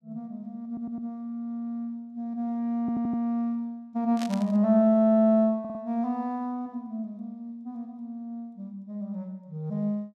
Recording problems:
stutter; at 0.5 s, at 3 s and at 5.5 s
burst of static; at 4 s; peak -7 dB vs average level

